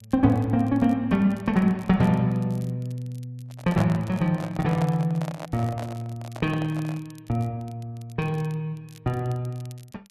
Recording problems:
crackle; vinyl, SNR 29 dB
handling noise; from 3.5 to 7 s; peak -2 dB vs average level

